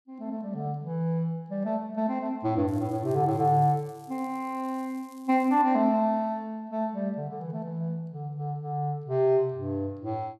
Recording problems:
crackling; from 2.5 to 5.5 s; loose cable, SNR 29 dB

